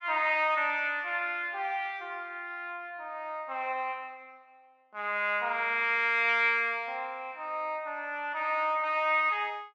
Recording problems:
none

